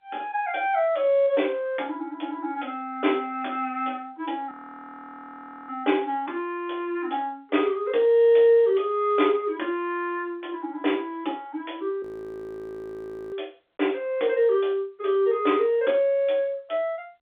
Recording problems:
telephone audio; 260 Hz to 3.6 kHz, G.711
audio freezing; at 4.5 s for 1 s and at 12 s for 1.5 s

